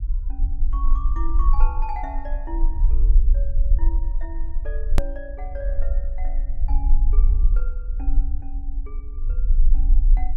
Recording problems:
low-frequency rumble; below 42 Hz, strongest tone 18 Hz, SNR -14 dB
edit click; at 5 s

